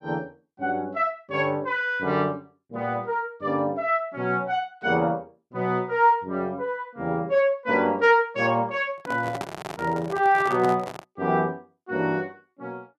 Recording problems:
microphone handling noise; from 9 to 11 s; peak -4 dB vs average level

